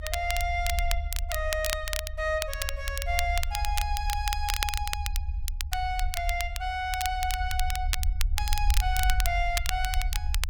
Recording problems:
low-frequency rumble; below 70 Hz, SNR 2 dB
crackle; vinyl, SNR 3 dB

